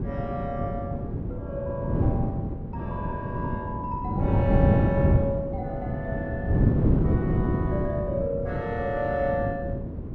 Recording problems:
wind on the microphone; below 260 Hz, SNR -4 dB

